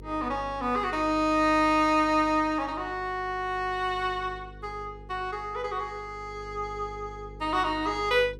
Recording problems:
electrical hum; 50 Hz, harmonics up to 500 Hz, SNR 19 dB

